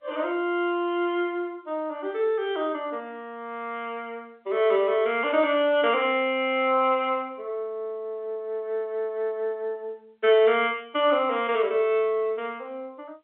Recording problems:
telephone audio; 300 Hz to 3.7 kHz, G.711

